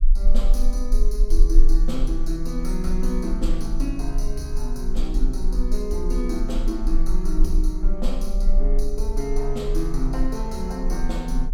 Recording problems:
low-frequency rumble; below 34 Hz, strongest tone 20 Hz, SNR -3 dB

